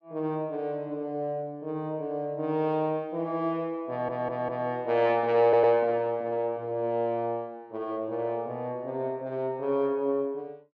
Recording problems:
stutter; at 4 s and at 5.5 s

